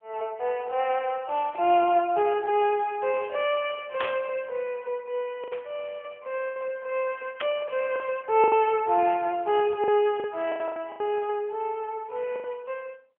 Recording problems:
telephone audio; 320 Hz to 3.5 kHz, AMR-NB
lost packets; 5% of the sound replaced, filled with the last packet
burst of static; at 4 s, at 5.5 s and at 7.5 s; peak -3 dB vs average level

